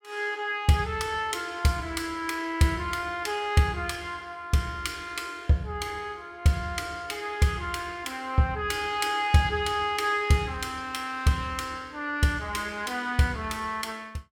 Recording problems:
none

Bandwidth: 17.5 kHz